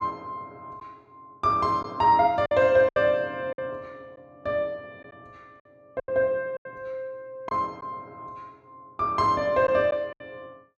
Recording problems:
lost packets; 6% of the sound replaced, filled with silence

